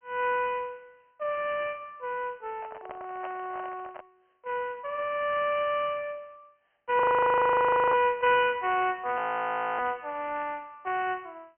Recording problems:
telephone audio; 300 Hz to 3.2 kHz, G.726
microphone handling noise; from 2.5 to 4 s; peak -10 dB vs average level
audio freezing; at 7 s for 1 s and at 9 s for 0.5 s

